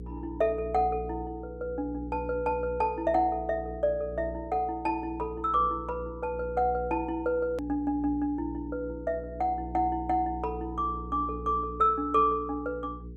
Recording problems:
hum; 60 Hz, harmonics up to 480 Hz, SNR 13 dB
edit click; at 7.5 s

